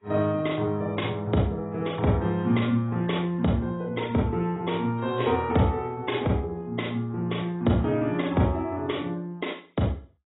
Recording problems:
codec artefacts; AAC, log-spectral distance 3 dB, nothing above 3.8 kHz

